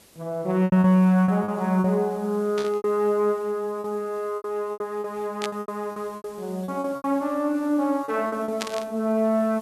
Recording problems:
hiss; SNR 26 dB
lost packets; 12% of the sound replaced, filled with repeated pitch periods
burst of static; at 2.5 s, at 5.5 s and at 8.5 s; peak -1 dB vs average level

